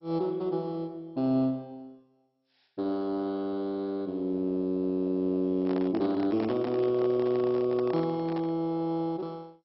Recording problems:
codec artefacts; MP2, log-spectral distance 2 dB, nothing above 5.2 kHz
microphone handling noise; from 5.5 to 8.5 s; peak -6 dB vs average level

